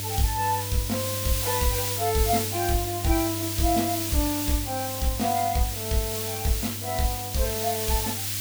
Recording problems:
hum; 50 Hz, harmonics up to 600 Hz, SNR 9 dB
background hiss; SNR 1 dB

